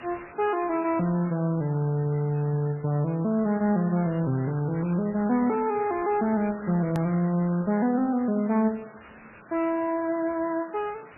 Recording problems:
lossy codec; MP3, log-spectral distance 7 dB, nothing above 13.1 kHz
background hiss; SNR 19 dB
edit click; at 7 s

